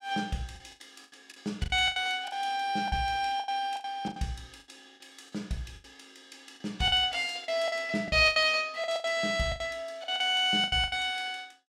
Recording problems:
lost packets; 14% of the sound replaced, filled with the last packet

